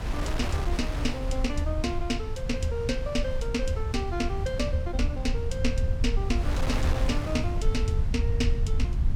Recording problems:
low-frequency rumble; below 80 Hz, SNR 0 dB
wind on the microphone; below 1.9 kHz, SNR 9 dB

